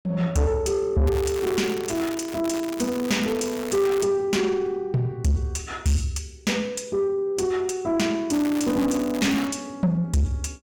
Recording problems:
distortion; soft clipping, signal-to-distortion ratio 7 dB
crackling; from 1 to 4 s and from 8.5 to 9.5 s; loose cable, SNR 14 dB

